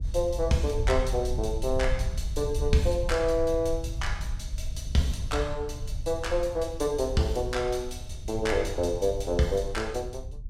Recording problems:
rumble; below 74 Hz, SNR 6 dB

